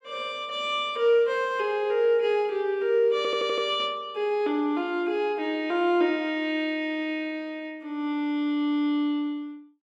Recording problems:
stutter; at 3 s

